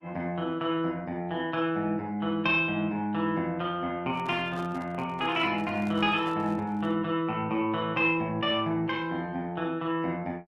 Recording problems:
lossy compression; Opus, log-spectral distance 2 dB
handling noise; from 4 to 7 s; peak -11 dB vs average level

